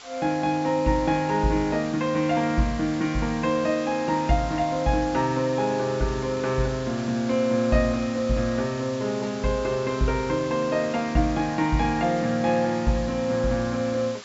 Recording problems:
low-pass filter; nothing above 8 kHz
hiss; SNR 16 dB

